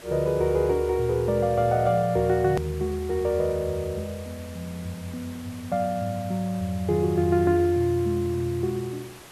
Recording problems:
background hiss; slope -3 dB per octave, SNR 20 dB
hard cut with a click; at 2.5 s

